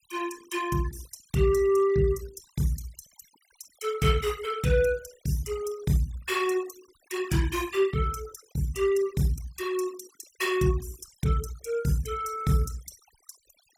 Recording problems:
denoising artefacts; signal-to-artefact ratio 18 dB

